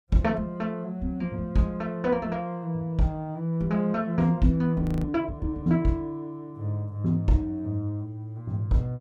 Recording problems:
audio freezing; at 5 s

